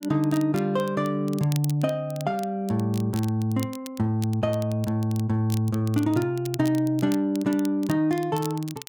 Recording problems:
crackle; vinyl, SNR 18 dB

